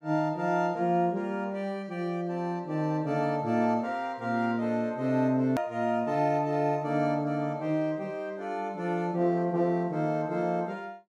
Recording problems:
edit click; at 5.5 s

